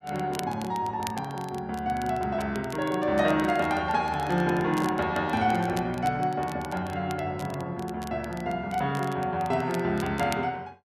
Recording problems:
crackling; vinyl, SNR 18 dB

